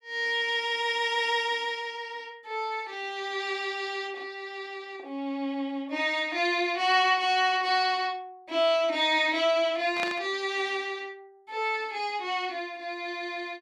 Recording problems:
static burst; at 10 s; peak -2 dB vs average level

